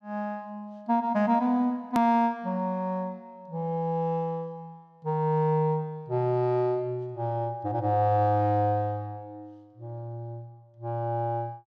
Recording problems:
hard cut with a click; at 2 s

